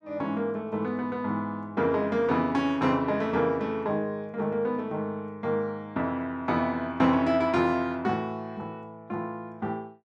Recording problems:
none

